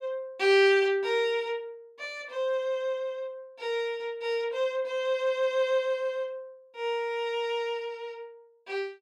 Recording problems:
none

